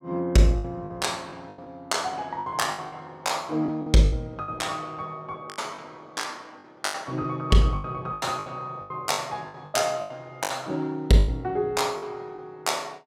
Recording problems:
packet loss; 13% of the sound replaced, filled with the last packet

